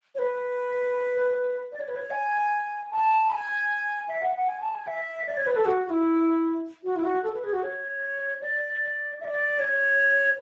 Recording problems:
lossy codec; Speex, log-spectral distance 2 dB

